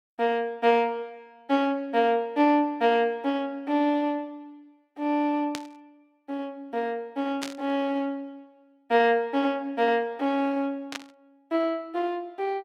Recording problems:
static burst; at 5.5 s, at 7.5 s and at 11 s; peak -3 dB vs average level

